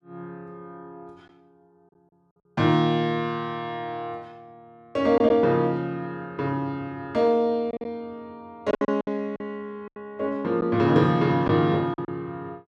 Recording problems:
packet loss; 5% of the sound replaced, filled with silence

